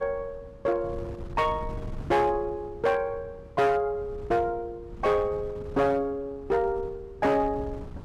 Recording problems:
distorted audio; hard clipping, signal-to-distortion ratio 12 dB
wind noise; below 170 Hz, SNR 15 dB

